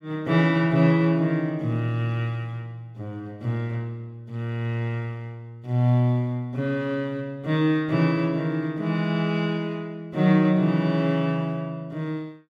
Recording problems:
none

